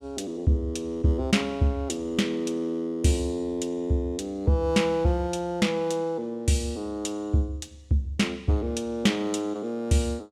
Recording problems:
none

